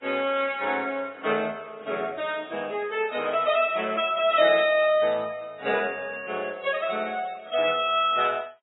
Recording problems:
lossy compression; AAC, then Vorbis, log-spectral distance 3 dB, nothing above 3.3 kHz

